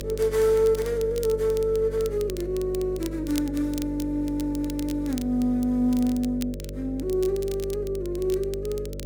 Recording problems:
hum; 50 Hz, harmonics up to 600 Hz, SNR 10 dB
crackle; vinyl, SNR 18 dB

